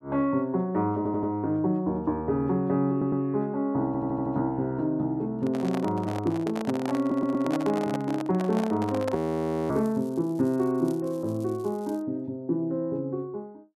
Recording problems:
audio stuttering; 4 times, first at 1 s
handling noise; from 5.5 to 10 s; peak -2 dB vs average level
frozen audio; at 9 s for 0.5 s
crackling; from 9.5 to 12 s; loose cable, SNR 27 dB

